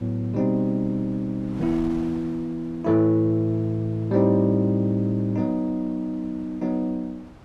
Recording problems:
wind noise; below 680 Hz, SNR 21 dB

